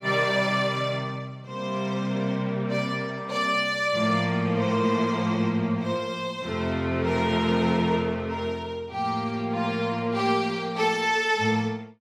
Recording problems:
none

